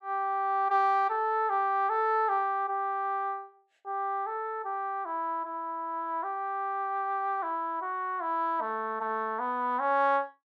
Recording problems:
none

